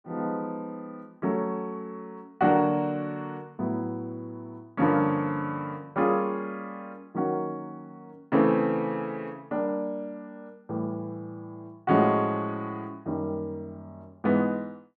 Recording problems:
none

